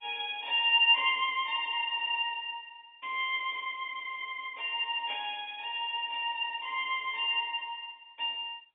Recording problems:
telephone audio; 260 Hz to 3.6 kHz, G.711

